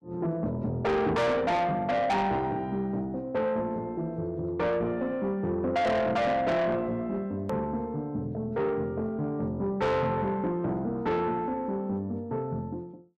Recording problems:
distorted audio; soft clipping, signal-to-distortion ratio 7 dB
click at an edit; at 7.5 s

